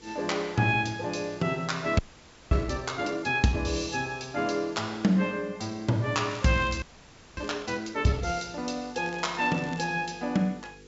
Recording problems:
treble cut off; nothing above 8 kHz
mains hum; 50 Hz, harmonics up to 500 Hz, SNR 27 dB
background hiss; slope +1 dB per octave, SNR 27 dB
frozen audio; at 2 s for 0.5 s and at 7 s for 0.5 s
crackling; from 6.5 to 7.5 s and at 9 s; loose cable, SNR 21 dB

